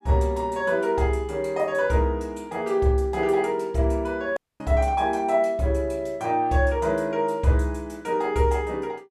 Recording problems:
dropout; at 4.5 s

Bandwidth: 14.5 kHz